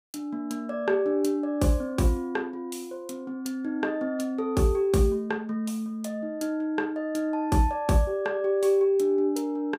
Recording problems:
none

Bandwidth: 15.5 kHz